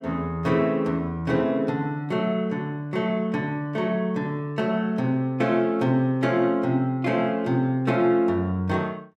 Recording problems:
none

